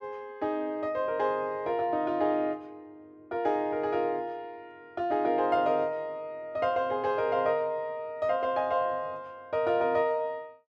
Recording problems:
none

